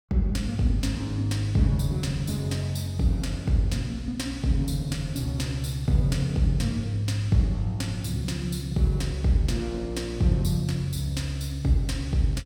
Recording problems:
none

